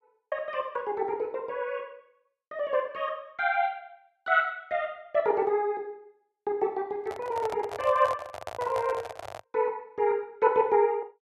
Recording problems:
microphone handling noise; from 7 to 9.5 s; peak -3 dB vs average level

